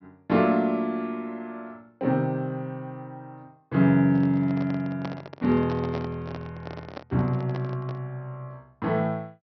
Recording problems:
treble missing; nothing above 5.8 kHz
handling noise; from 4 to 8 s; peak -5 dB vs average level

